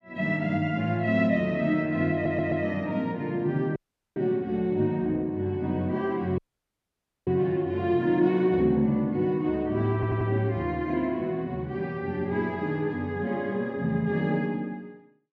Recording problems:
stutter; at 2 s and at 10 s
audio cutting out; at 4 s and at 6.5 s for 1 s

